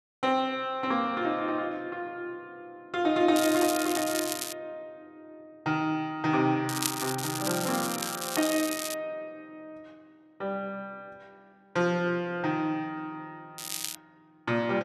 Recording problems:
crackling; from 3.5 to 4.5 s, from 6.5 to 9 s and at 14 s; loose cable, SNR 4 dB

